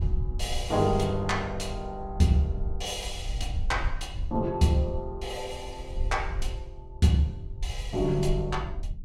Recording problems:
wind on the microphone; below 68 Hz, SNR 8 dB

